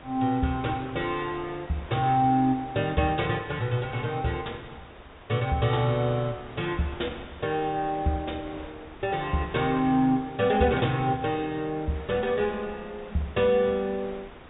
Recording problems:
treble missing; nothing above 4 kHz
wind on the microphone; below 1.6 kHz, SNR 18 dB

